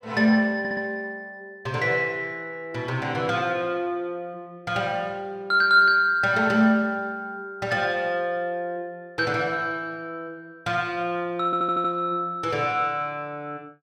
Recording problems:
stutter; at 0.5 s and at 11 s

